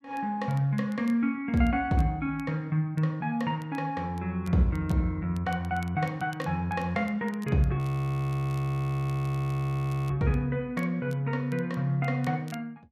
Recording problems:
crackling; vinyl, SNR 28 dB
frozen audio; at 8 s for 2.5 s

